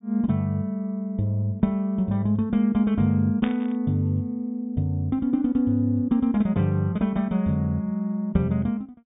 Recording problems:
treble cut off; nothing above 3.7 kHz
static burst; at 3.5 s; peak -6 dB vs average level

